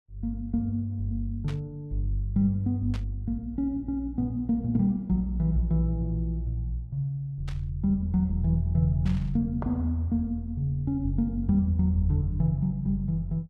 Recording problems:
burst of static; 4 times, first at 1.5 s; peak -11 dB vs average level

